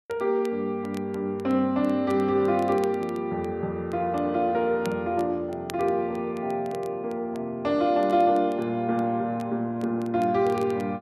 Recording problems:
crackle; vinyl, SNR 26 dB

